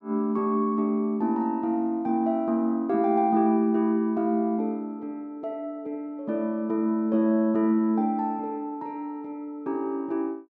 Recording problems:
none

